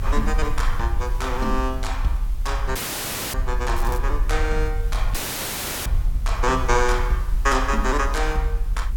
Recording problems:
hiss; SNR 21 dB
low-frequency rumble; below 48 Hz, strongest tone 36 Hz, SNR 1 dB
dropout; at 3 s for 0.5 s and at 5 s for 0.5 s
crackle; at 4 s; loose cable, SNR 17 dB

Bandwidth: 17 kHz